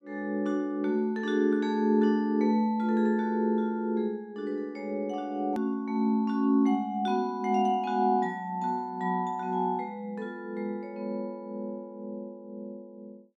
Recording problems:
edit click; at 5.5 s

